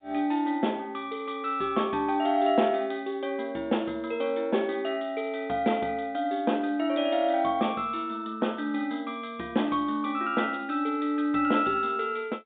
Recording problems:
phone line; 240 Hz to 3.7 kHz, G.711

